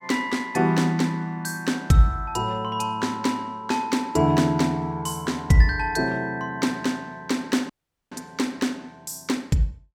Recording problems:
audio cutting out; at 7.5 s

